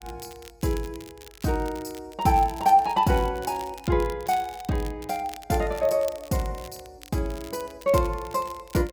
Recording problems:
crackle; vinyl, SNR 20 dB

